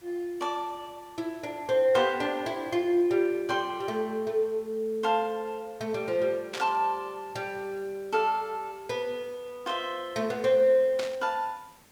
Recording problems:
hiss; slope -3 dB per octave, SNR 27 dB
burst of static; at 6.5 s and at 11 s; peak -3 dB vs average level

